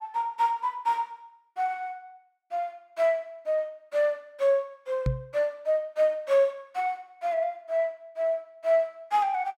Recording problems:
knock on the microphone; at 5 s; peak +4 dB vs average level

